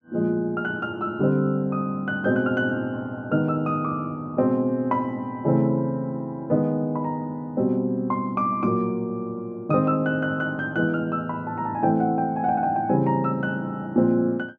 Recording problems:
none

